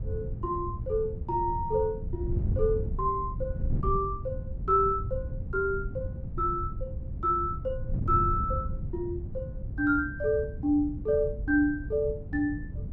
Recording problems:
wind on the microphone; below 120 Hz, SNR 6 dB

